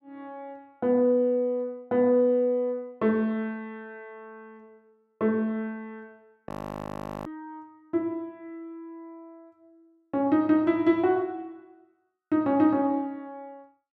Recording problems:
audio freezing; at 6.5 s for 1 s

